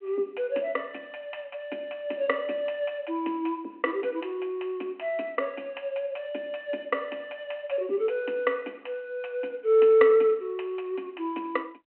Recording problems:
phone line; 240 Hz to 3.1 kHz, G.726

